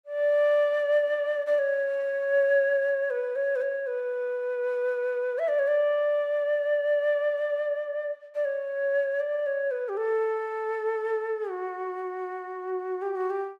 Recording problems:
none

